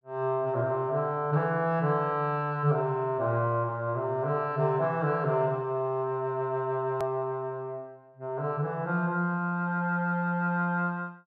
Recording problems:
click at an edit; at 7 s

